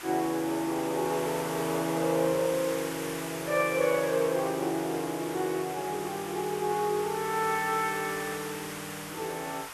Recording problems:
hiss; SNR 9 dB

